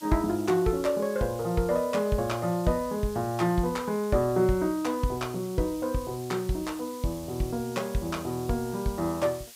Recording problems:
hiss; slope +5 dB per octave, SNR 18 dB

